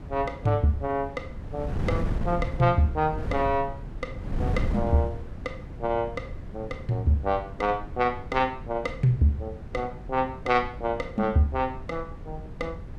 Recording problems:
wind on the microphone; below 170 Hz, SNR 9 dB

